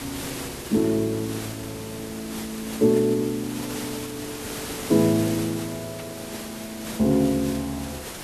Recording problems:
hiss; slope -3 dB per octave, SNR 10 dB
static burst; at 6 s; peak -12 dB vs average level

